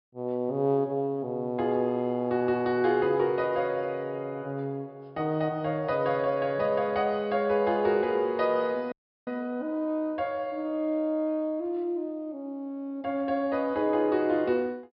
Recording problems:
low-pass filter; nothing above 5.5 kHz
audio freezing; at 9 s

